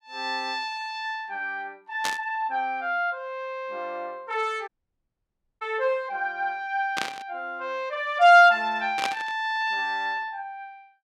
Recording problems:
burst of static; at 2 s, at 7 s and at 9 s; peak +1 dB vs average level
dropout; at 4.5 s for 1 s

